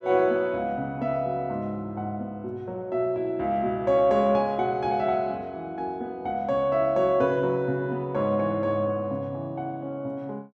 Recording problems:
none

